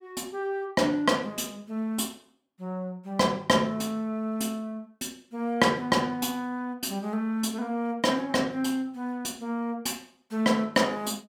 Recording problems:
none

